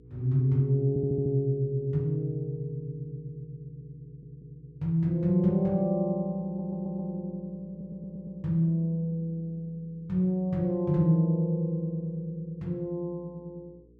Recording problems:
mains hum; 60 Hz, harmonics up to 480 Hz, SNR 28 dB
audio stuttering; 4 times, first at 1 s

